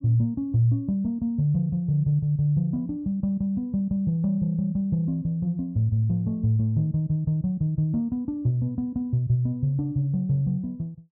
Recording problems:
none

